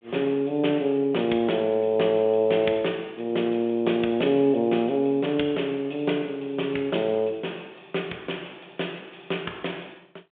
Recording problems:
phone line; 190 Hz to 3.6 kHz, G.726

